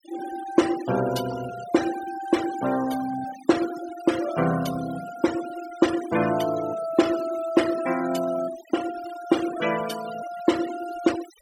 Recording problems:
denoising artefacts; signal-to-artefact ratio 12 dB

